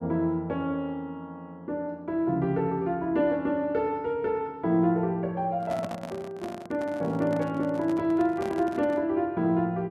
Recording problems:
handling noise; from 5.5 to 9 s; peak -4 dB vs average level

